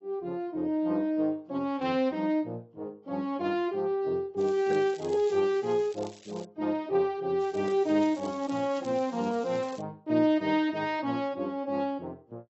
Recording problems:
lossy codec; AAC, log-spectral distance 2 dB, nothing above 7.1 kHz
crackle; from 4.5 to 6.5 s and from 7.5 to 10 s; loose cable, SNR 22 dB

